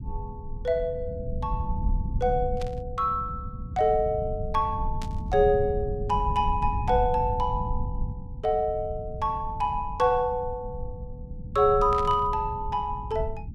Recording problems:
low-frequency rumble; below 110 Hz, SNR 8 dB
static burst; at 2.5 s, at 5 s and at 12 s; peak -10 dB vs average level

